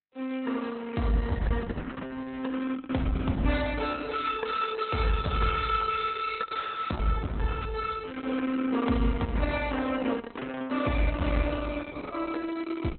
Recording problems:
lossy codec; Opus, log-spectral distance 5 dB, nothing above 4 kHz

